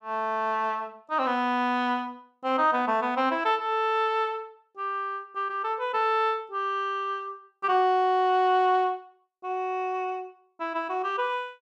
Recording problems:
none

